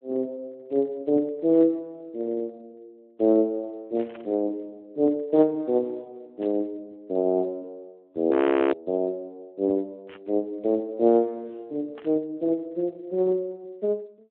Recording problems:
phone line; 240 Hz to 3.3 kHz, Speex
burst of static; 4 times, first at 4 s; peak -13 dB vs average level
frozen audio; at 8.5 s

